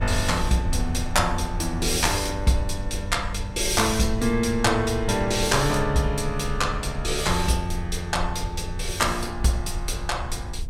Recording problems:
low-frequency rumble; below 70 Hz, SNR 9 dB

